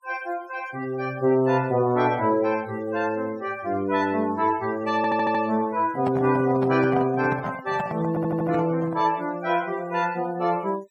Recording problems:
noise reduction artefacts; signal-to-artefact ratio 22 dB
audio stuttering; at 5 s and at 8 s
handling noise; from 6 to 9 s; peak -3 dB vs average level

